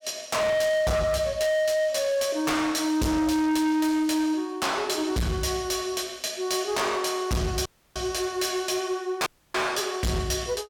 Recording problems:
distorted audio; hard clipping, signal-to-distortion ratio 7 dB
dropout; at 7.5 s and at 9.5 s

